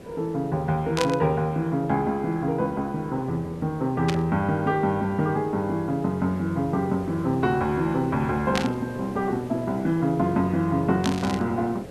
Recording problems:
background hiss; SNR 15 dB
burst of static; 4 times, first at 1 s; peak +2 dB vs average level

